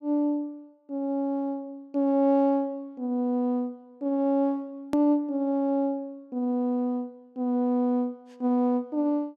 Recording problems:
hard cut with a click; at 5 s

